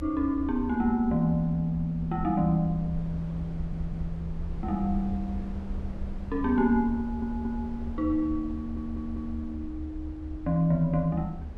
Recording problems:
rumble; below 76 Hz, SNR 10 dB
audio stuttering; at 3.5 s, at 7 s and at 8.5 s

